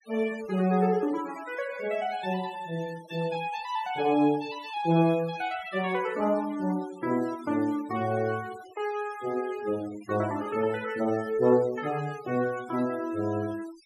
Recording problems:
denoising artefacts; signal-to-artefact ratio 20 dB

